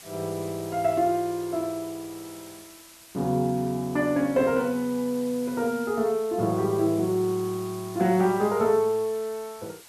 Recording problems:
background hiss; slope +1 dB per octave, SNR 19 dB

